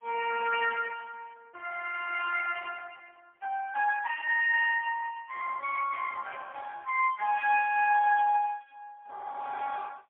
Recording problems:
telephone audio; 410 Hz to 3.1 kHz, AMR-NB, then MP3

